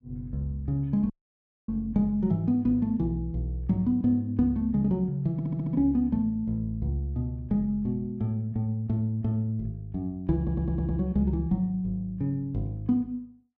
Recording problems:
dropout; at 1 s for 0.5 s
audio stuttering; at 5.5 s and at 10 s

